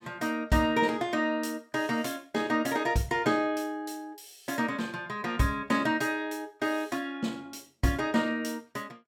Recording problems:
none

